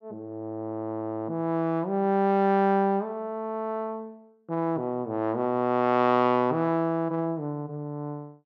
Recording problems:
none

